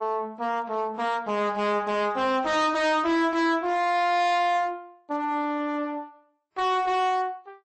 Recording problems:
codec artefacts; MP3, then AAC, log-spectral distance 2 dB, nothing above 8.2 kHz
distorted audio; hard clipping, uneven, signal-to-distortion ratio 7 dB

